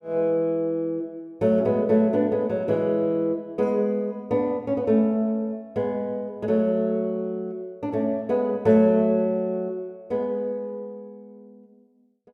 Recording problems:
none

